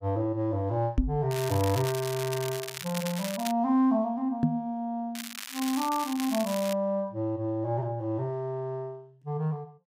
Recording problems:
knock on the microphone; at 1 s and at 4.5 s; peak +8 dB vs average level
crackling; from 1.5 to 3.5 s and from 5 to 6.5 s; loose cable, SNR 8 dB

